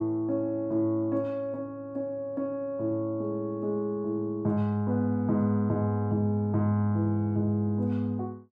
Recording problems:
none

